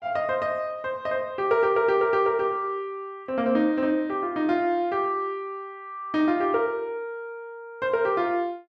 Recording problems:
none

